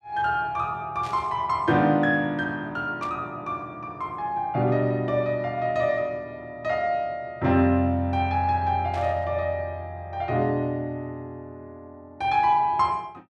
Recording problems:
static burst; at 1 s, at 3 s and at 9 s; peak -13 dB vs average level

